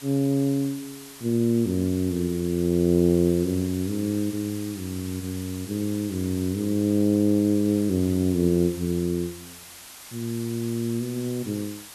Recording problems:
hiss; slope +1 dB per octave, SNR 16 dB

